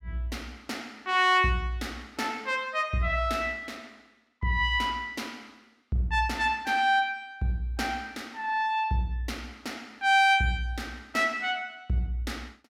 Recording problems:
none

